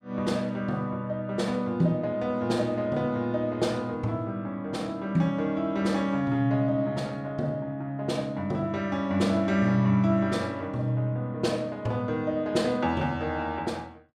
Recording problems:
none

